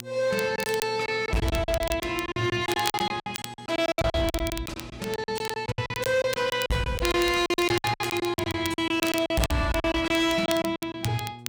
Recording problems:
distortion; hard clipping, signal-to-distortion ratio 11 dB
hum; 60 Hz, harmonics up to 840 Hz, SNR 20 dB
crackle; vinyl, SNR 12 dB
packet loss; 18% of the sound replaced, filled with silence

